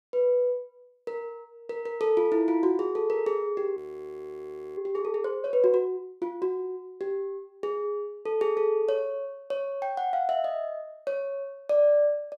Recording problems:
audio freezing; at 4 s for 1 s

